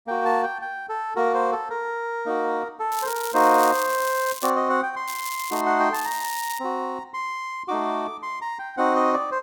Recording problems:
crackling; from 3 to 4.5 s, at 5 s and at 6 s; loose cable, SNR 10 dB

